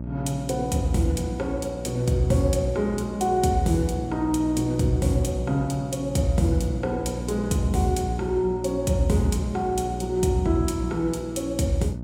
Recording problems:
electrical hum; 60 Hz, harmonics up to 660 Hz, SNR 9 dB

